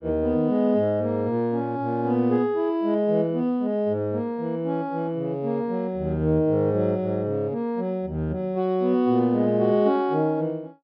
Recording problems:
treble missing; nothing above 5.5 kHz

